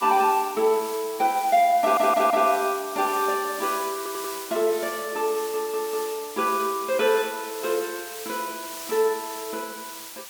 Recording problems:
hiss; slope +2 dB per octave, SNR 12 dB
audio stuttering; at 2 s, at 4 s and at 5.5 s

